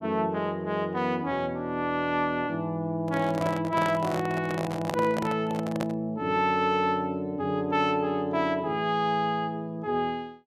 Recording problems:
handling noise; from 3 to 6 s; peak 0 dB vs average level

